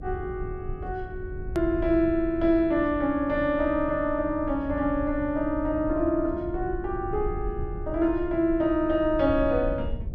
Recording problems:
mains hum; 60 Hz, harmonics up to 720 Hz, SNR 24 dB
low-frequency rumble; below 90 Hz, SNR 12 dB
hard cut with a click; at 1.5 s

